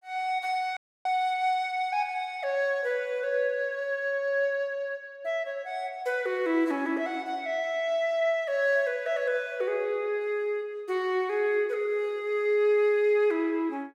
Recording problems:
audio cutting out; at 1 s

